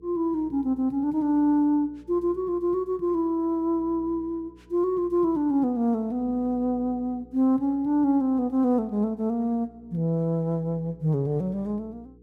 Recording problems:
hum; 60 Hz, harmonics up to 480 Hz, SNR 25 dB

